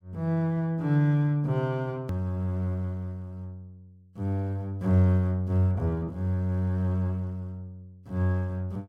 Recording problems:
edit click; at 2 s

